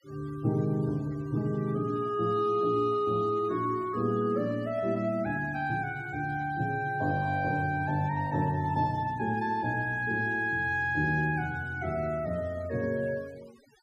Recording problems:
noise reduction artefacts; signal-to-artefact ratio 25 dB

